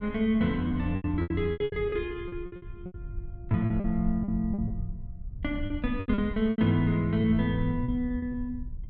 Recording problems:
rumble; below 90 Hz, SNR 11 dB
lost packets; 15% of the sound replaced, filled with repeated pitch periods

